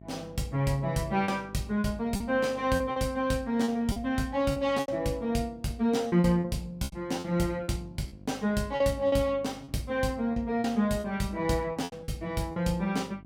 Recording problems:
hum; 50 Hz, harmonics up to 750 Hz, SNR 22 dB
packet loss; 9% of the sound replaced, filled with repeated pitch periods

